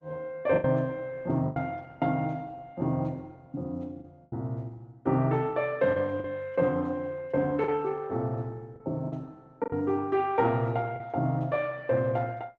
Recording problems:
lossy codec; Opus, log-spectral distance 2 dB
lost packets; 5% of the sound replaced, filled with the last packet

